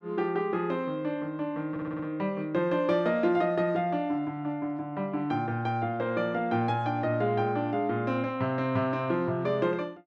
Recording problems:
stutter; at 1.5 s

